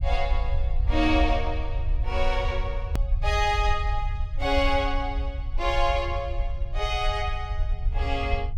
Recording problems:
low-frequency rumble; below 62 Hz, SNR 2 dB
click at an edit; at 3 s

